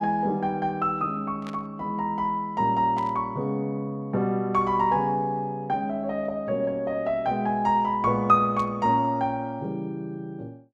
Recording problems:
static burst; at 1.5 s, at 3 s and at 8.5 s; peak -13 dB vs average level

